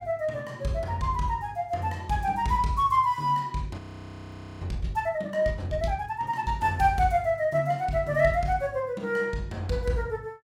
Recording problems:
audio freezing; at 4 s for 1 s

